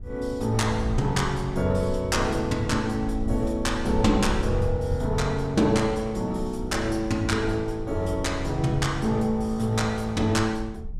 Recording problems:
wind noise; below 82 Hz, SNR 10 dB

